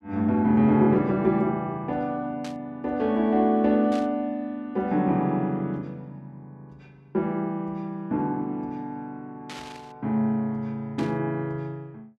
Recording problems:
static burst; 4 times, first at 2.5 s; peak -10 dB vs average level

